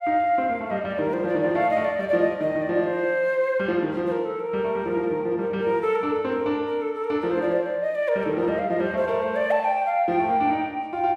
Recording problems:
none

